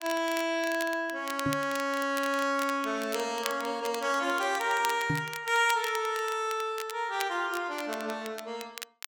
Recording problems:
crackle; vinyl, SNR 13 dB
microphone bump; at 1.5 s and at 5 s; peak +2 dB vs average level

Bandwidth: 17 kHz